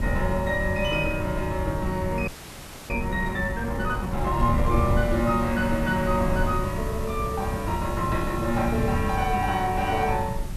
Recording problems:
background hiss; slope -2 dB per octave, SNR 18 dB
wind noise; below 130 Hz, SNR 5 dB
frozen audio; at 2.5 s for 0.5 s

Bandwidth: 13.5 kHz